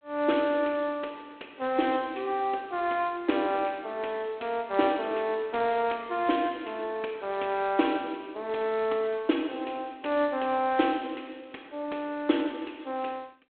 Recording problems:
phone line; 240 Hz to 3.5 kHz, G.726

